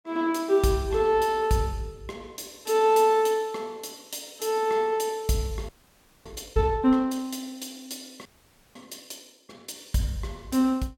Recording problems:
frozen audio; at 5.5 s for 0.5 s and at 8.5 s

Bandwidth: 17 kHz